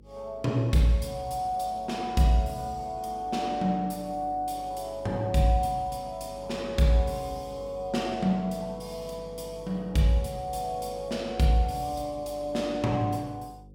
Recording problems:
hum; 50 Hz, harmonics up to 550 Hz, SNR 21 dB

